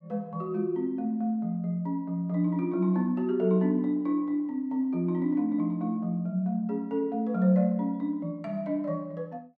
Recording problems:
none

